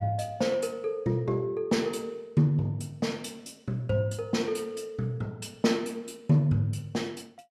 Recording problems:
none

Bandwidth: 14.5 kHz